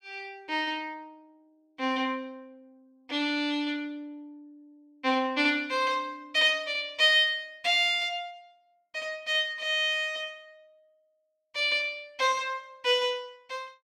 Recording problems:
none

